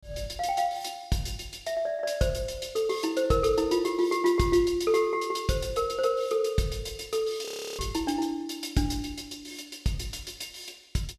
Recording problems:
frozen audio; at 7.5 s

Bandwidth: 14 kHz